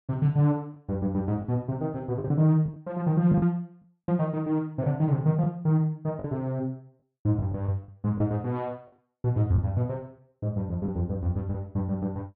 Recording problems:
packet loss; 5% of the sound replaced, filled with the last packet

